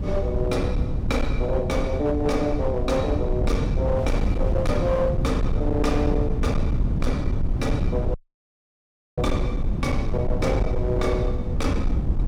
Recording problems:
distorted audio; hard clipping, signal-to-distortion ratio 11 dB
electrical hum; 60 Hz, harmonics up to 360 Hz, SNR 11 dB
rumble; below 130 Hz, SNR 0 dB
wind on the microphone; below 860 Hz, SNR 21 dB
dropout; at 8 s for 1 s

